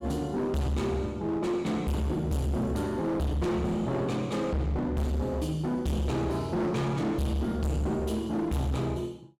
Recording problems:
distorted audio; hard clipping, uneven, signal-to-distortion ratio 5 dB

